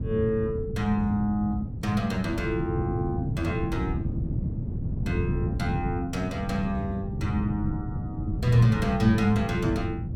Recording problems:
wind on the microphone; below 180 Hz, SNR 3 dB

